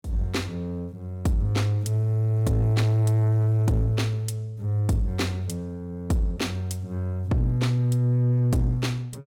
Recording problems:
distorted audio; soft clipping, signal-to-distortion ratio 12 dB

